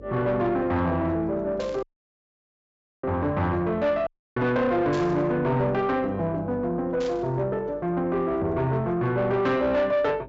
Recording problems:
low-pass filter; nothing above 8 kHz
distortion; soft clipping, signal-to-distortion ratio 10 dB
hum; 50 Hz, harmonics up to 550 Hz, SNR 23 dB
static burst; at 1.5 s, at 5 s and at 7 s; peak -10 dB vs average level
audio cutting out; at 2 s for 1 s and at 4 s

